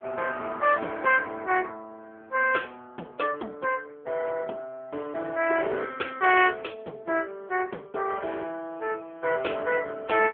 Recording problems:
phone line; 280 Hz to 3.5 kHz, AMR-NB

